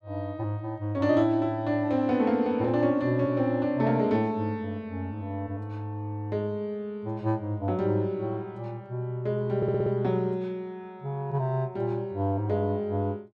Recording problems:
stutter; at 9.5 s

